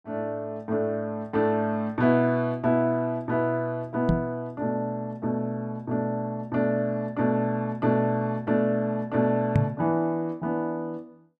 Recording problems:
microphone thump; at 4 s and at 9.5 s; peak +7 dB vs average level

